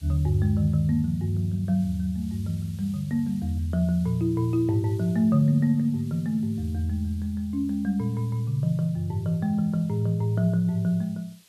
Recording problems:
hiss; SNR 28 dB

